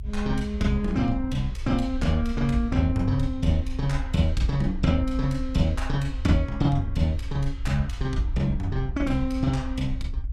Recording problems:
rumble; below 64 Hz, strongest tone 26 Hz, SNR 8 dB

